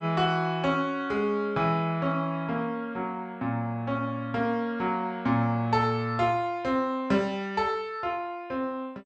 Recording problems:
codec artefacts; MP2, log-spectral distance 2 dB

